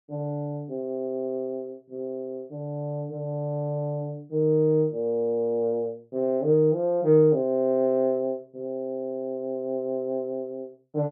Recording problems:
none

